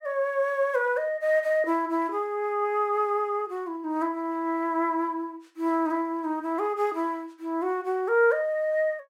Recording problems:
none

